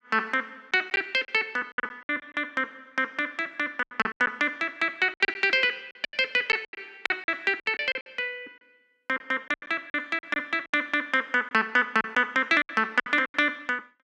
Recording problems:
lost packets; 13% of the sound replaced, filled with silence

